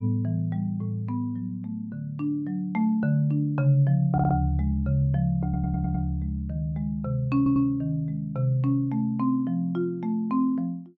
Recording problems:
stutter; at 4 s, at 5.5 s and at 7.5 s

